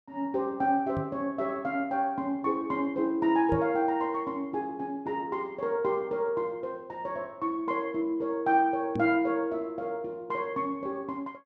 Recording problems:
knock on the microphone; at 1 s, at 3.5 s and at 9 s; peak +1 dB vs average level

